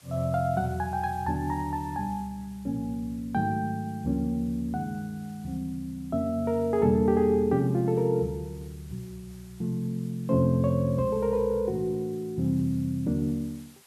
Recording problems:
background hiss; slope 0 dB per octave, SNR 27 dB

